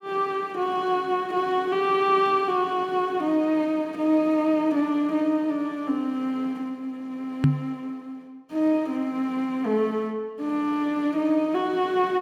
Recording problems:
knock on the microphone; at 7.5 s; peak +9 dB vs average level

